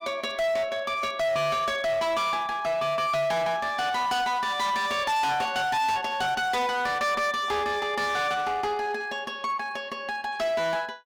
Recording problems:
distortion; hard clipping, uneven, signal-to-distortion ratio 8 dB

